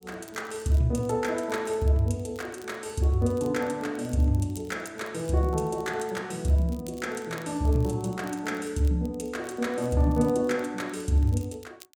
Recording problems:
crackle; vinyl, SNR 26 dB

